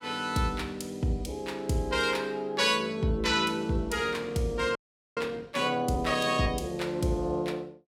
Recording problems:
audio freezing; at 5 s

